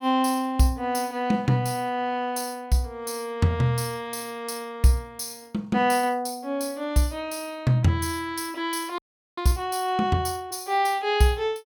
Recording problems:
frozen audio; at 9 s

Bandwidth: 17.5 kHz